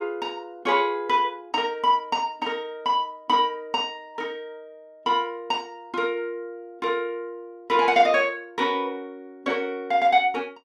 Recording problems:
none

